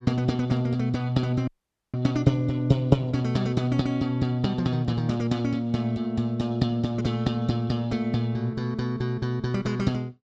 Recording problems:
dropout; at 1.5 s

